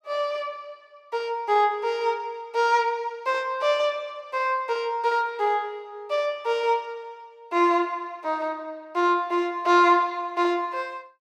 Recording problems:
none

